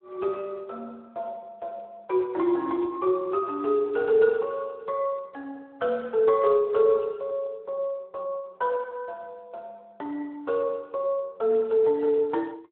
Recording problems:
telephone audio; 300 Hz to 2.8 kHz, Speex

